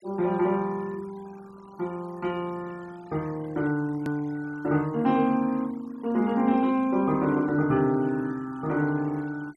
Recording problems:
noise reduction artefacts; signal-to-artefact ratio 25 dB
edit click; at 4 s

